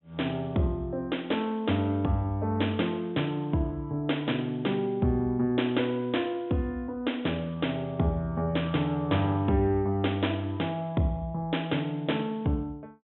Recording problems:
treble cut off; nothing above 3.7 kHz

